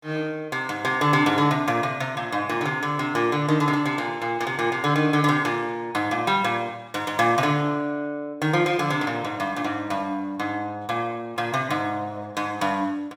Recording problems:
none

